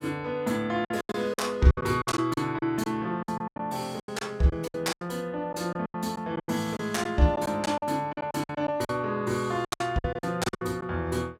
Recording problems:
lost packets; 15% of the sound replaced, filled with silence

